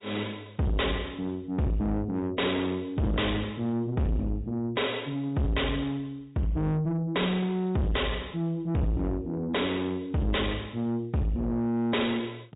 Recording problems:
treble cut off; nothing above 3.8 kHz
lossy codec; MP3, log-spectral distance 3 dB
distorted audio; soft clipping, signal-to-distortion ratio 6 dB

